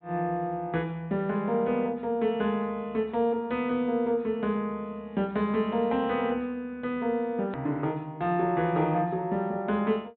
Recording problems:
treble cut off; nothing above 4 kHz
click at an edit; at 7.5 s

